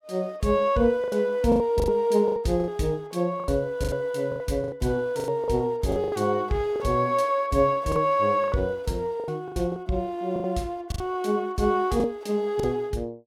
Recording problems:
lost packets; 12% of the sound replaced, filled with the last packet

